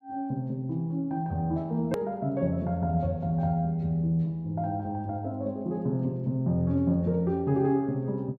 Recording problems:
hard cut with a click; at 2 s

